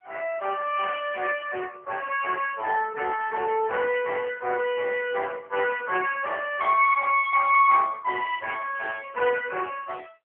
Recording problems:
telephone audio; 320 Hz to 2.9 kHz, AMR-NB

